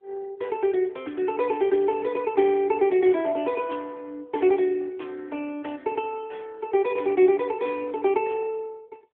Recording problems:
telephone audio; 260 Hz to 3.4 kHz, AMR-NB

